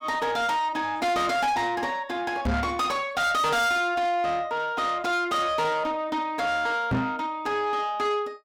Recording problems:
distortion; soft clipping, signal-to-distortion ratio 6 dB
knock on the microphone; at 2.5 s and at 7 s; peak +3 dB vs average level

